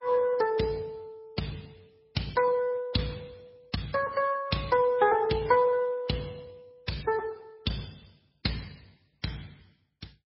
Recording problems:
codec artefacts; Speex, then MP3, log-spectral distance 4 dB, nothing above 5 kHz

